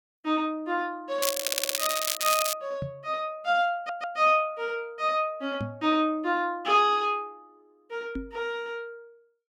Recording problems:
crackling; from 1 to 2.5 s; loose cable, SNR 0 dB
audio stuttering; at 1.5 s and at 4 s
knock on the microphone; at 3 s, at 5.5 s and at 8 s; peak -2 dB vs average level

